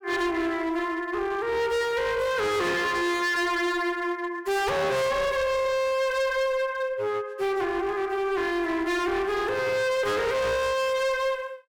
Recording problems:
distorted audio; hard clipping, uneven, signal-to-distortion ratio 6 dB

